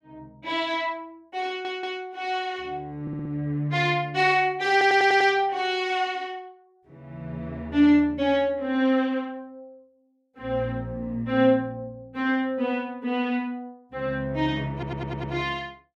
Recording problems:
audio stuttering; 4 times, first at 1.5 s

